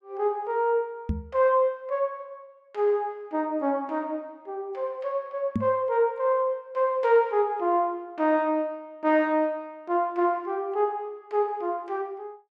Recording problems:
microphone bump; at 1 s and at 5.5 s; peak +3 dB vs average level

